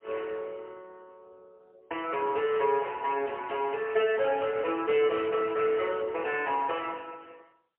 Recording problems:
phone line; 300 Hz to 3.1 kHz, AMR-NB, then MP3

